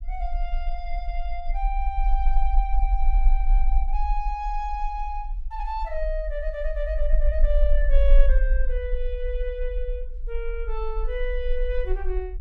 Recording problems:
rumble; below 42 Hz, strongest tone 20 Hz, SNR -4 dB

